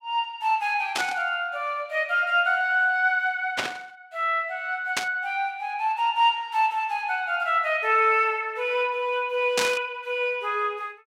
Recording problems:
burst of static; 4 times, first at 1 s; peak +4 dB vs average level

